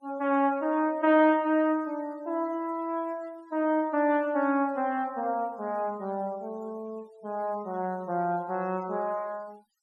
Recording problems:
denoising artefacts; signal-to-artefact ratio 28 dB

